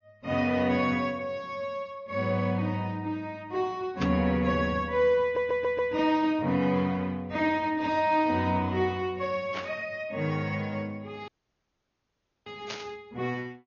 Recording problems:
treble cut off; nothing above 6.7 kHz
codec artefacts; AAC, log-spectral distance 2 dB
static burst; at 4 s, at 9.5 s and at 13 s; peak -4 dB vs average level
stutter; at 5 s
dropout; at 11 s for 1 s

